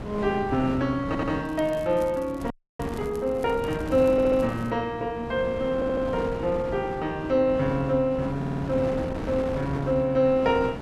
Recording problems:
hum; 60 Hz, harmonics up to 300 Hz, SNR 21 dB
wind on the microphone; below 580 Hz, SNR 10 dB
audio stuttering; 4 times, first at 1 s
crackling; from 1.5 to 4.5 s; loose cable, SNR 27 dB
audio freezing; at 2.5 s

